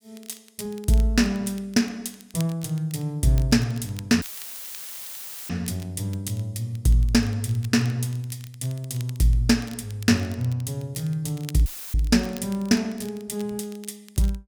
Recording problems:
crackle; vinyl, SNR 22 dB
dropout; at 4 s for 1.5 s and at 12 s; filled with static

